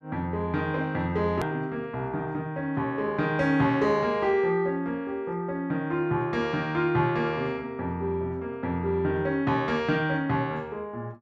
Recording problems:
edit click; at 1.5 s

